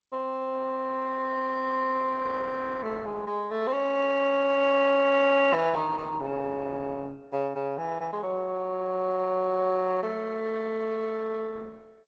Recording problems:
codec artefacts; Opus, then G.722, log-spectral distance 3 dB

